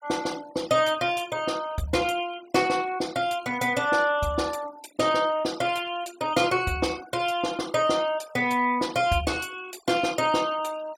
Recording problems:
denoising artefacts; signal-to-artefact ratio 19 dB

